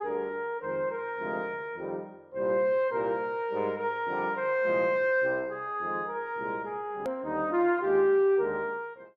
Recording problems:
click at an edit; at 7 s

